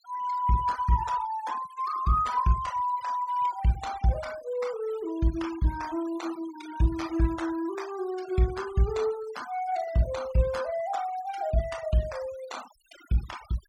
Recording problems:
denoising artefacts; signal-to-artefact ratio 18 dB

